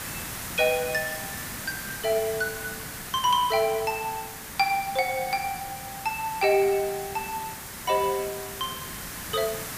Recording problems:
hiss; SNR 8 dB

